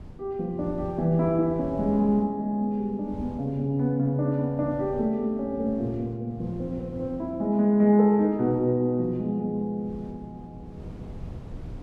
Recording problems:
wind noise; below 200 Hz, SNR 18 dB

